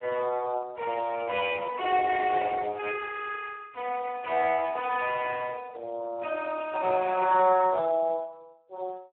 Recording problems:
telephone audio; 300 Hz to 2.5 kHz, Speex

